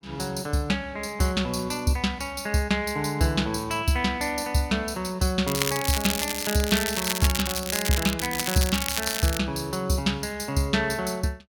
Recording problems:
crackling; from 5.5 to 9.5 s; loose cable, SNR 2 dB

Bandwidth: 17.5 kHz